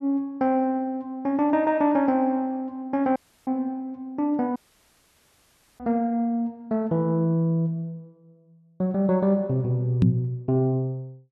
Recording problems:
dropout; at 3 s and at 4.5 s for 1 s
microphone thump; at 6 s and at 10 s; peak +9 dB vs average level

